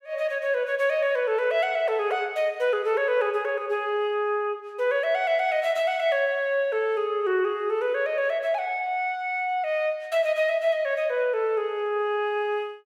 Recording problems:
none

